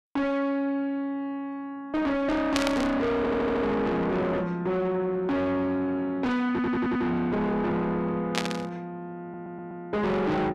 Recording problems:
distorted audio; soft clipping, signal-to-distortion ratio 6 dB
static burst; at 2.5 s and at 8.5 s; peak +4 dB vs average level
stutter; at 3 s, at 6.5 s and at 9 s

